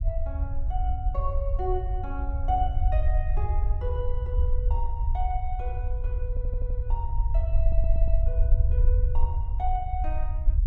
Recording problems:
rumble; below 64 Hz, SNR -8 dB
stutter; at 6.5 s and at 7.5 s

